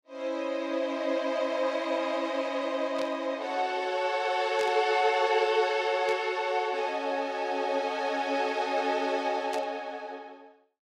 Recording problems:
burst of static; 4 times, first at 3 s; peak -6 dB vs average level

